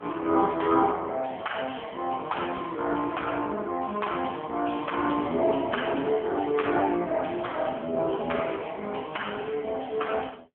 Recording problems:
phone line; 170 Hz to 3.2 kHz, AMR-NB

